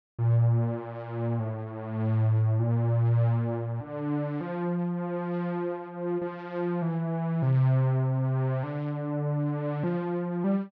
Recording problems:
none

